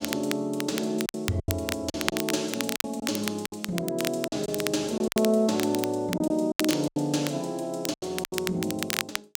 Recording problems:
crackle; vinyl, SNR 6 dB
packet loss; 10% of the sound replaced, filled with silence

